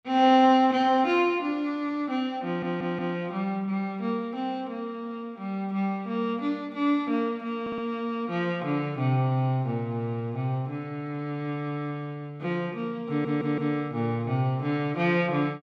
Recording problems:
audio stuttering; at 2.5 s, at 7.5 s and at 13 s

